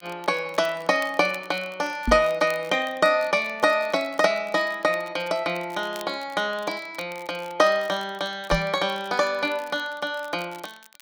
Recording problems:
crackle; vinyl, SNR 24 dB
knock on the microphone; at 2 s and at 8.5 s; peak +2 dB vs average level

